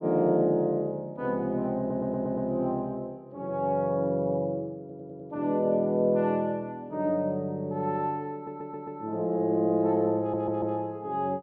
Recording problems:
stutter; 4 times, first at 2 s

